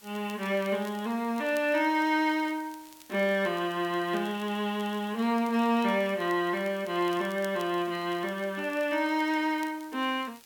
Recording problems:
background hiss; slope 0 dB per octave, SNR 25 dB
crackle; vinyl, SNR 26 dB

